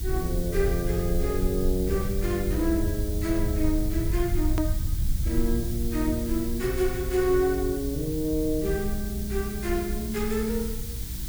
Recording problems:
hum; 60 Hz, harmonics up to 360 Hz, SNR 11 dB
hiss; slope +2 dB per octave, SNR 11 dB
low-frequency rumble; below 80 Hz, SNR 4 dB
click at an edit; at 4.5 s

